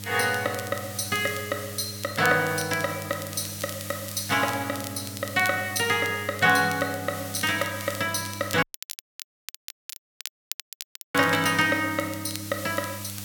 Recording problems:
hum; 50 Hz, harmonics up to 800 Hz, SNR 15 dB
background hiss; slope +2 dB per octave, SNR 13 dB
crackle; vinyl, SNR 15 dB
dropout; at 8.5 s for 2.5 s

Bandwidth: 17 kHz